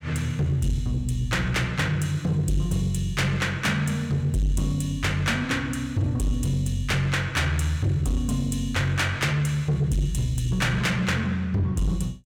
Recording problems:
distortion; soft clipping, signal-to-distortion ratio 11 dB

